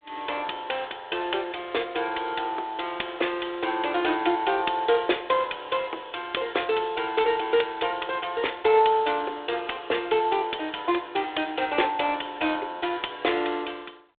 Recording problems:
phone line; 300 Hz to 3.6 kHz, G.726

